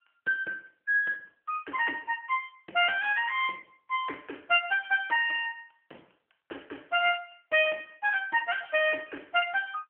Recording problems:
phone line; 300 Hz to 3.1 kHz, AMR-NB

